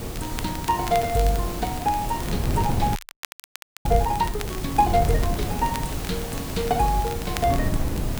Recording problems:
hiss; slope -4 dB per octave, SNR 9 dB
wind on the microphone; below 180 Hz, SNR 5 dB
crackling; vinyl, SNR 15 dB
frozen audio; at 3 s for 1 s

